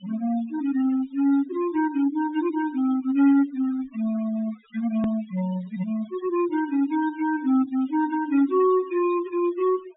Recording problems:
treble missing; nothing above 4 kHz
denoising artefacts; signal-to-artefact ratio 18 dB
edit click; at 5 s

